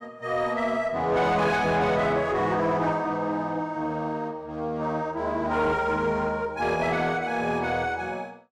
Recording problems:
distorted audio; soft clipping, signal-to-distortion ratio 10 dB

